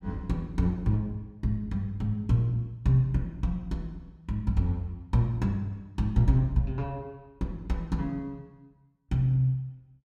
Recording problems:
none

